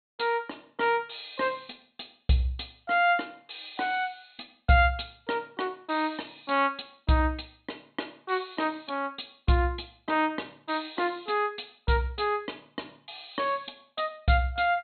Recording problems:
treble missing; nothing above 4.3 kHz

